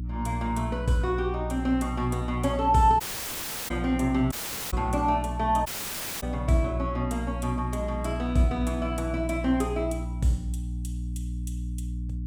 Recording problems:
hum; 60 Hz, harmonics up to 300 Hz, SNR 6 dB
dropout; at 3 s for 0.5 s, at 4.5 s and at 5.5 s for 0.5 s

